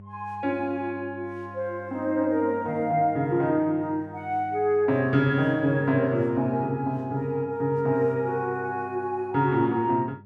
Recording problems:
electrical hum; 50 Hz, harmonics up to 600 Hz, SNR 21 dB

